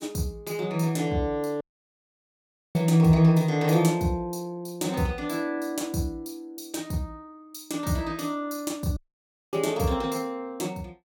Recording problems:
audio cutting out; at 1.5 s for 1 s and at 9 s for 0.5 s

